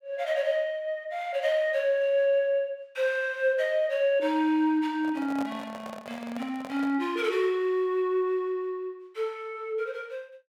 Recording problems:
microphone handling noise; from 5 to 7 s; peak -6 dB vs average level

